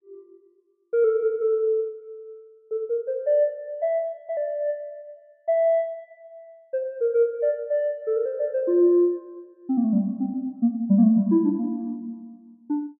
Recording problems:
none

